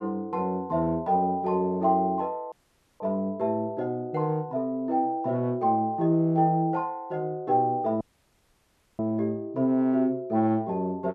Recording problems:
audio cutting out; at 2.5 s and at 8 s for 1 s

